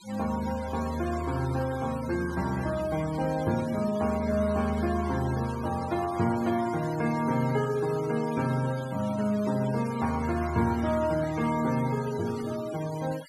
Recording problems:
noise reduction artefacts; signal-to-artefact ratio 16 dB

